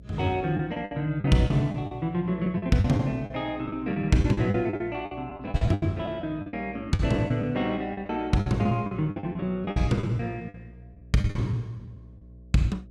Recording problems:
hum; 60 Hz, harmonics up to 660 Hz, SNR 21 dB
packet loss; 14% of the sound replaced, filled with the last packet

